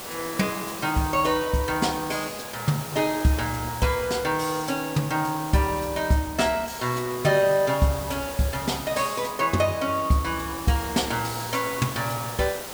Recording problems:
hiss; slope -3 dB per octave, SNR 10 dB

